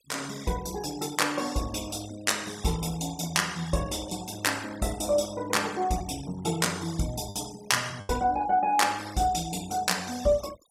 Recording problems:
noise reduction artefacts; signal-to-artefact ratio 18 dB
lost packets; 1.4% of the sound replaced, filled with the last packet

